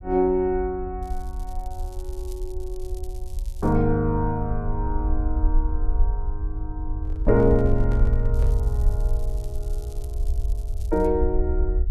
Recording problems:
rumble; below 58 Hz, SNR 3 dB
crackling; from 1 to 4 s and from 8.5 to 11 s; loose cable, SNR 26 dB
handling noise; from 7 to 8.5 s; peak -10 dB vs average level

